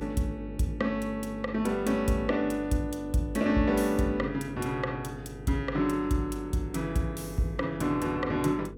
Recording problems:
hum; 50 Hz, harmonics up to 500 Hz, SNR 14 dB

